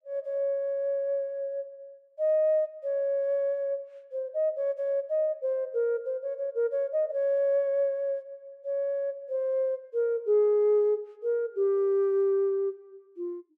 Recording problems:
none

